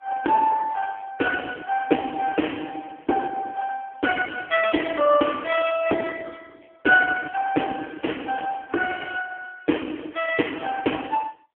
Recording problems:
phone line; 280 Hz to 3.3 kHz, AMR-NB

